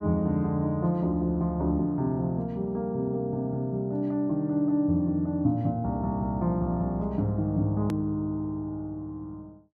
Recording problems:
hard cut with a click; at 8 s

